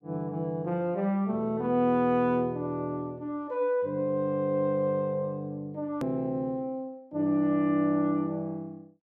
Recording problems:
edit click; at 6 s

